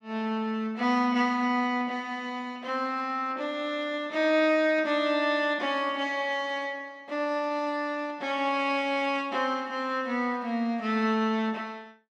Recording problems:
none

